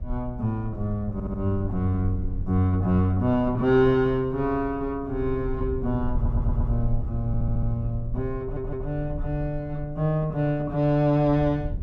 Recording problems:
low-frequency rumble; below 74 Hz, SNR 9 dB
stutter; 4 times, first at 1 s

